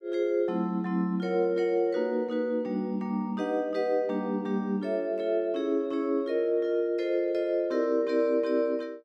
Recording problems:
none

